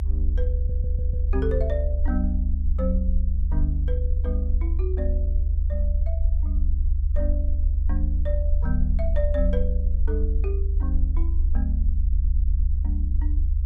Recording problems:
low-frequency rumble; below 70 Hz, SNR -9 dB
audio stuttering; at 0.5 s and at 12 s

